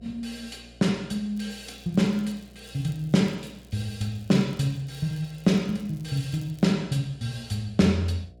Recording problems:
electrical hum; 60 Hz, harmonics up to 720 Hz, SNR 25 dB
crackle; from 1.5 to 6.5 s; loose cable, SNR 29 dB

